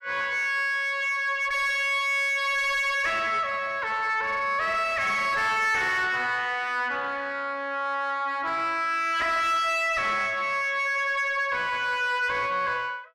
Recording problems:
distorted audio; soft clipping, signal-to-distortion ratio 7 dB

